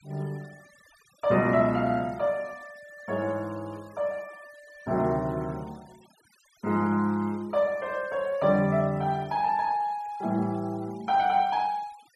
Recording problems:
noise reduction artefacts; signal-to-artefact ratio 27 dB

